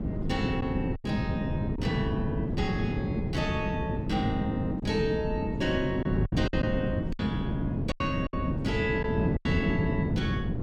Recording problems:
wind noise; below 250 Hz, SNR -2 dB
lost packets; 5% of the sound replaced, filled with silence

